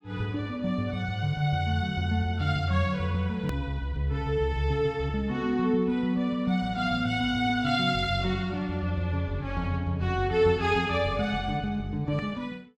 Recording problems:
edit click; at 3.5 s

